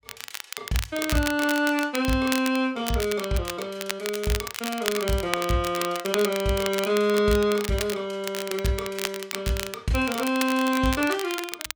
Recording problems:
crackle; vinyl, SNR 8 dB

